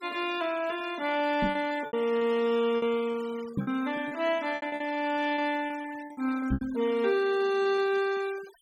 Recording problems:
denoising artefacts; signal-to-artefact ratio 19 dB
packet loss; 9% of the sound replaced, filled with repeated pitch periods
knock on the microphone; at 1.5 s, at 3.5 s and at 6.5 s; peak +2 dB vs average level

